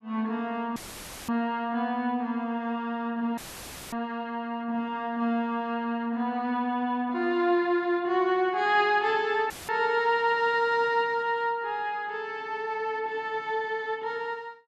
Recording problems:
dropout; at 1 s for 0.5 s, at 3.5 s for 0.5 s and at 9.5 s; filled with static

